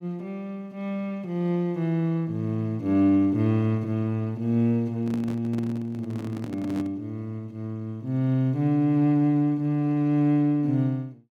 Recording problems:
microphone handling noise; from 5 to 7 s; peak -6 dB vs average level

